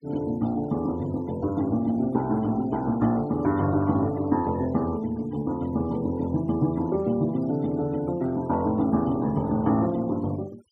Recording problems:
denoising artefacts; signal-to-artefact ratio 24 dB

